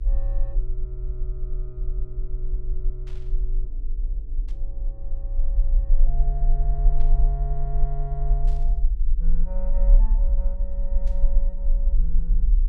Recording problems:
hum; 60 Hz, harmonics up to 480 Hz, SNR 16 dB
low-frequency rumble; below 38 Hz, strongest tone 20 Hz, SNR -13 dB
static burst; 5 times, first at 3 s; peak -8 dB vs average level

